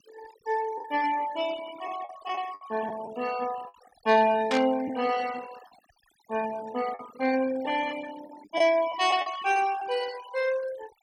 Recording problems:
noise reduction artefacts; signal-to-artefact ratio 16 dB
packet loss; 5% of the sound replaced, filled with the last packet
burst of static; at 4.5 s; peak -1 dB vs average level

